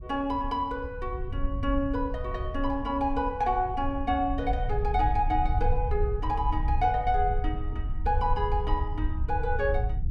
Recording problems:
low-frequency rumble; below 70 Hz, SNR 4 dB

